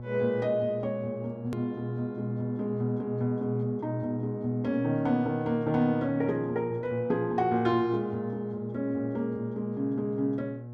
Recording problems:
hum; 60 Hz, harmonics up to 840 Hz, SNR 10 dB
hard cut with a click; at 1.5 s

